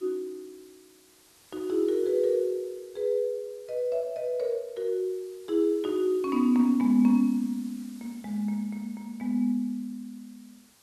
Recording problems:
hiss; slope -1 dB per octave, SNR 27 dB

